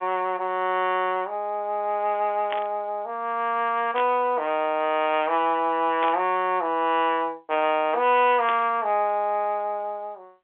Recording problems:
phone line; 280 Hz to 3.6 kHz, G.711
static burst; 4 times, first at 2.5 s; peak -4 dB vs average level

